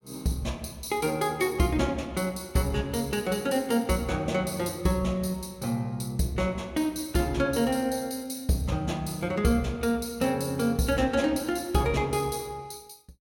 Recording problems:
none

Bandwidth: 16.5 kHz